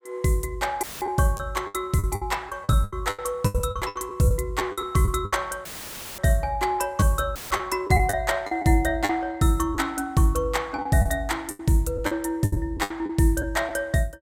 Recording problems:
lost packets; 11% of the sound replaced, filled with the last packet
audio cutting out; at 1 s, at 5.5 s for 0.5 s and at 7.5 s; filled with static

